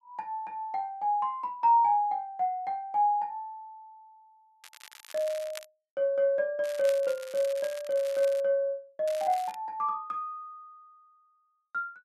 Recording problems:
crackling; from 4.5 to 5.5 s, from 6.5 to 8.5 s and at 9 s; loose cable, SNR 18 dB

